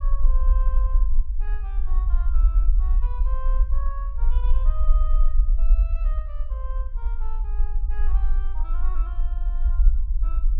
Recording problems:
low-frequency rumble; below 44 Hz, SNR -18 dB

